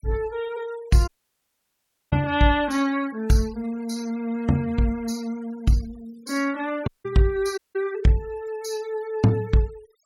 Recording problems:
denoising artefacts; signal-to-artefact ratio 22 dB
audio cutting out; at 1 s for 1 s, at 7 s and at 7.5 s

